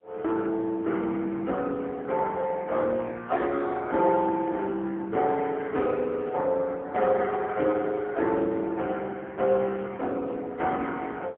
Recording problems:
telephone audio; 240 Hz to 3.6 kHz, AMR-NB, then MP3

